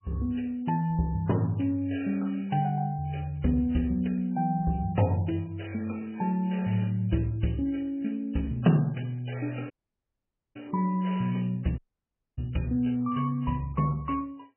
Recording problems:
lossy codec; MP3, log-spectral distance 6 dB, nothing above 2.9 kHz
audio cutting out; at 9.5 s for 1 s and at 12 s for 0.5 s

